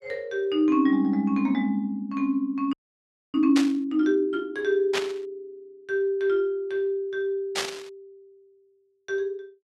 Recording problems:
frozen audio; at 2.5 s for 0.5 s
static burst; at 3.5 s, at 5 s and at 7.5 s; peak +2 dB vs average level

